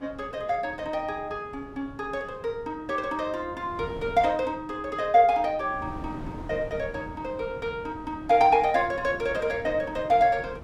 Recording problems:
wind noise; below 390 Hz, SNR 17 dB

